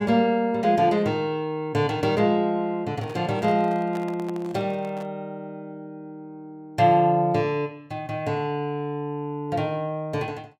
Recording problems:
microphone handling noise; from 3 to 5 s; peak -8 dB vs average level

